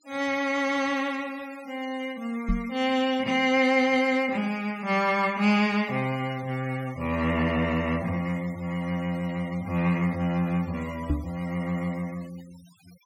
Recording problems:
noise reduction artefacts; signal-to-artefact ratio 21 dB
microphone thump; at 2.5 s and at 11 s; peak +3 dB vs average level

